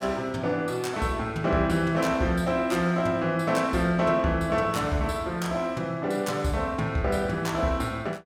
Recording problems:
none

